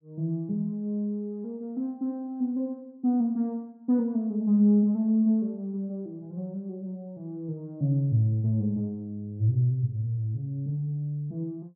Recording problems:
none

